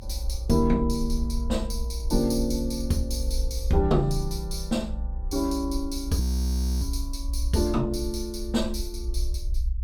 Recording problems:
rumble; below 62 Hz, SNR 4 dB
frozen audio; at 6 s for 0.5 s

